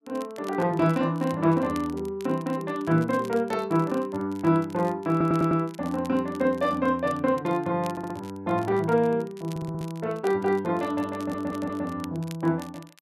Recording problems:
crackle; vinyl, SNR 24 dB
stutter; 4 times, first at 5 s

